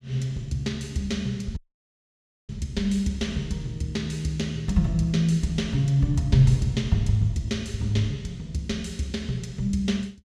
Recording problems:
audio cutting out; at 1.5 s for 1 s

